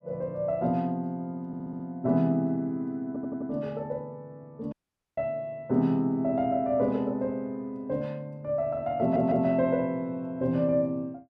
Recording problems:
stutter; at 1.5 s, at 3 s and at 9 s
audio cutting out; at 4.5 s

